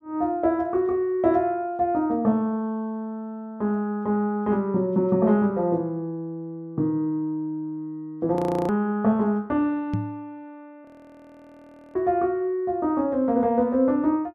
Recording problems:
frozen audio; at 8.5 s and at 11 s for 1 s
knock on the microphone; at 10 s; peak +1 dB vs average level

